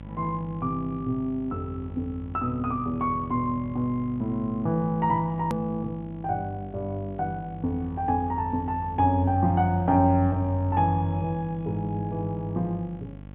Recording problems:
treble cut off; nothing above 3.6 kHz
hum; 50 Hz, harmonics up to 850 Hz, SNR 15 dB
hard cut with a click; at 5.5 s

